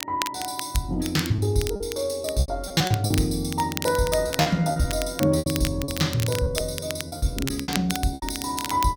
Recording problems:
crackle; vinyl, SNR 9 dB
packet loss; 11% of the sound replaced, filled with repeated pitch periods

